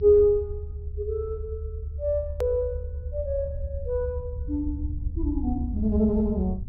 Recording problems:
low-pass filter; nothing above 5.5 kHz
rumble; below 76 Hz, SNR 6 dB
hard cut with a click; at 2.5 s

